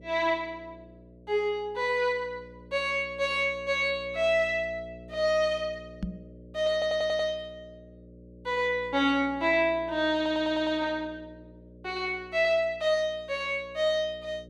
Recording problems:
hum; 60 Hz, harmonics up to 600 Hz, SNR 22 dB
knock on the microphone; at 6 s; peak -1 dB vs average level
stutter; at 6.5 s and at 10 s

